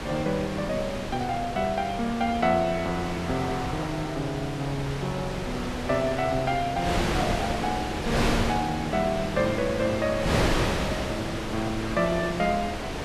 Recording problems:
wind noise; below 1.7 kHz, SNR 2 dB

